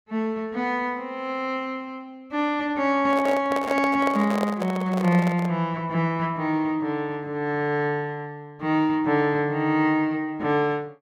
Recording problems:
microphone handling noise; from 3 to 5.5 s; peak 0 dB vs average level

